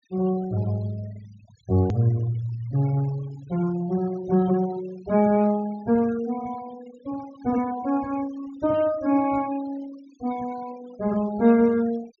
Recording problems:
treble missing; nothing above 7 kHz
denoising artefacts; signal-to-artefact ratio 22 dB
hard cut with a click; at 2 s

